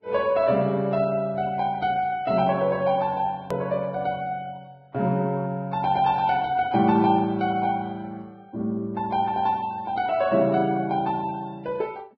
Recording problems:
lossy compression; Vorbis, log-spectral distance 2 dB
edit click; at 3.5 s

